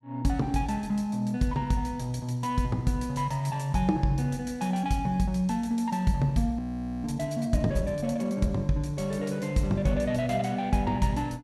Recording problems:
audio freezing; at 6.5 s

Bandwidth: 14.5 kHz